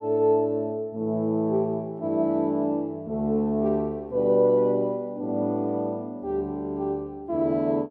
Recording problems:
none

